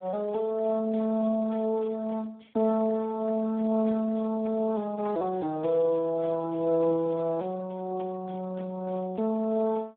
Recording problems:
telephone audio; 260 Hz to 3.8 kHz, Speex

